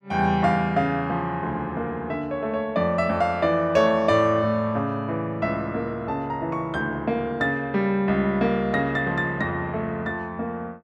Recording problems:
none

